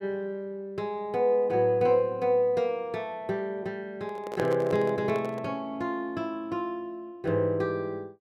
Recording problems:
microphone handling noise; from 4 to 5.5 s; peak -1 dB vs average level

